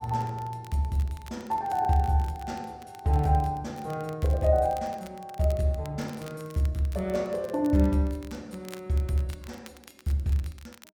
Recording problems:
crackling; vinyl, SNR 23 dB

